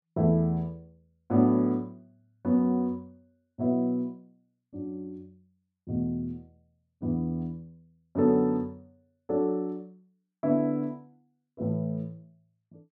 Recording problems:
none

